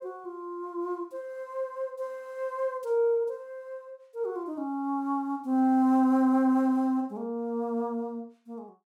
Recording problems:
none

